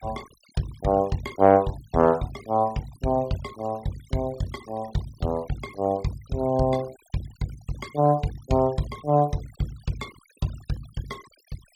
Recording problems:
noise reduction artefacts; signal-to-artefact ratio 22 dB

